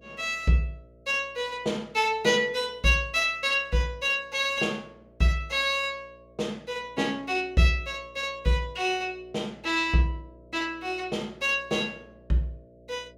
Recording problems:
electrical hum; 60 Hz, harmonics up to 660 Hz, SNR 28 dB

